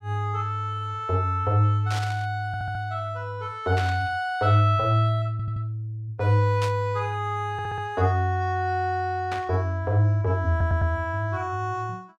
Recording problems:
burst of static; 4 times, first at 2 s; peak -6 dB vs average level
stutter; 4 times, first at 2.5 s

